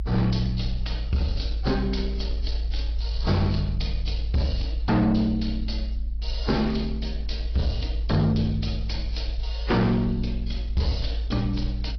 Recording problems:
low-pass filter; nothing above 5.3 kHz
lossy compression; AAC, then AAC, log-spectral distance 3 dB
distortion; soft clipping, signal-to-distortion ratio 11 dB
low-frequency rumble; below 56 Hz, strongest tone 54 Hz, SNR 4 dB

